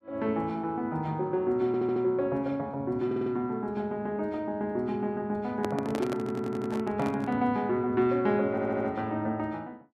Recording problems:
audio stuttering; 4 times, first at 1.5 s
microphone handling noise; from 5.5 to 7.5 s; peak 0 dB vs average level

